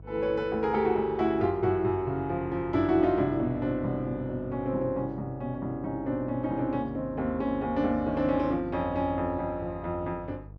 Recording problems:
electrical hum; 50 Hz, harmonics up to 650 Hz, SNR 18 dB

